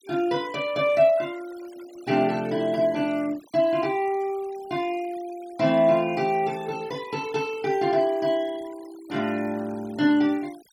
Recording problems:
denoising artefacts; signal-to-artefact ratio 23 dB

